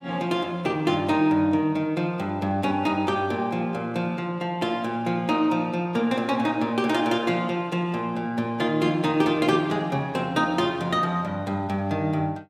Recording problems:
none

